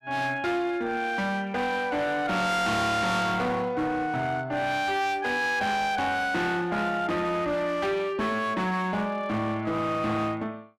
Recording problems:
distorted audio; hard clipping, uneven, signal-to-distortion ratio 8 dB

